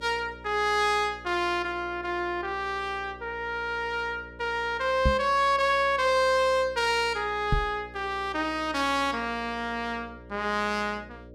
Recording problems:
electrical hum; 60 Hz, harmonics up to 600 Hz, SNR 20 dB
microphone thump; at 5 s and at 7.5 s; peak +5 dB vs average level

